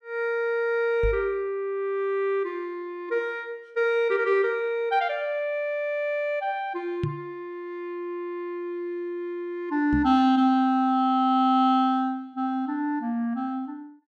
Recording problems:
microphone thump; at 1 s, at 7 s and at 10 s; peak +1 dB vs average level

